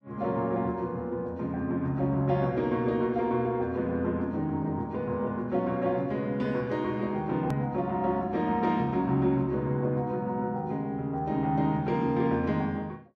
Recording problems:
click at an edit; at 7.5 s

